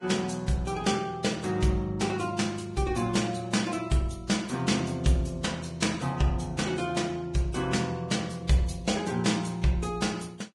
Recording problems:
codec artefacts; Vorbis, log-spectral distance 4 dB, nothing above 10.4 kHz

